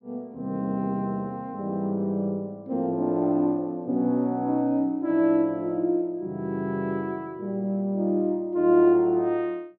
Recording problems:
none

